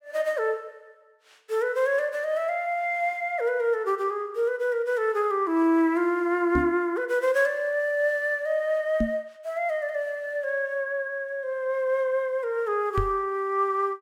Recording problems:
microphone thump; at 6.5 s, at 9 s and at 13 s; peak +3 dB vs average level

